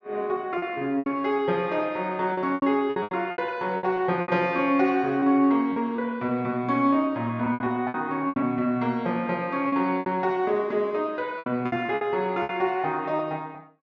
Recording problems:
treble missing; nothing above 7.2 kHz
packet loss; 11% of the sound replaced, filled with repeated pitch periods

